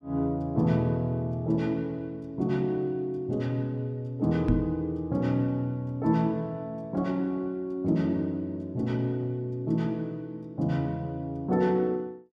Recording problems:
knock on the microphone; at 4.5 s; peak +6 dB vs average level

